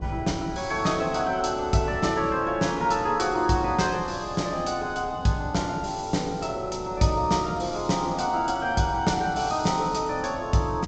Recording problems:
treble cut off; nothing above 8 kHz
wind noise; below 370 Hz, SNR 16 dB

